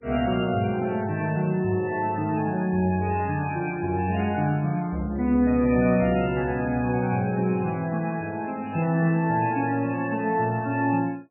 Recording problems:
lossy codec; MP3, log-spectral distance 3 dB, nothing above 2.5 kHz

